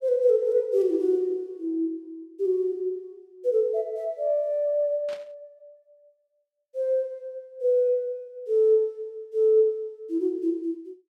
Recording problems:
static burst; at 5 s; peak -15 dB vs average level

